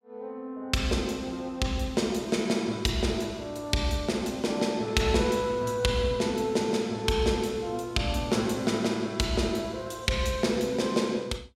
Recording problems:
none

